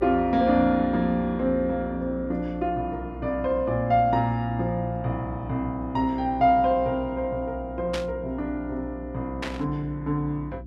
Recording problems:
electrical hum; 60 Hz, harmonics up to 360 Hz, SNR 14 dB
static burst; at 8 s and at 9.5 s; peak -3 dB vs average level

